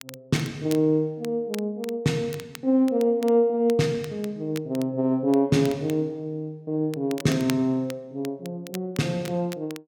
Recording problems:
crackling; vinyl, SNR 19 dB

